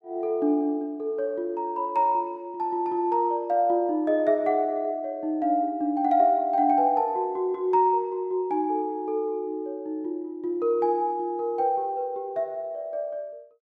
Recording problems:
none

